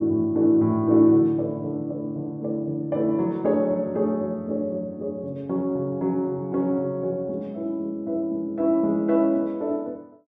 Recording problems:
none

